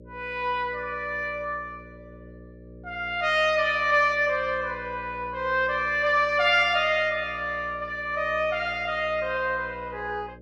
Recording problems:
electrical hum; 60 Hz, harmonics up to 600 Hz, SNR 21 dB

